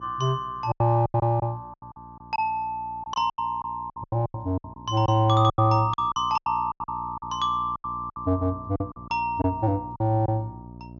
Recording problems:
low-pass filter; nothing above 7.1 kHz
hum; 60 Hz, harmonics up to 960 Hz, SNR 20 dB
packet loss; 15% of the sound replaced, filled with silence

